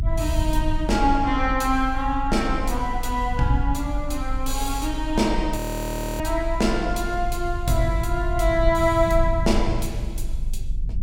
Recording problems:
rumble; below 56 Hz, strongest tone 20 Hz, SNR 5 dB
frozen audio; at 5.5 s for 0.5 s

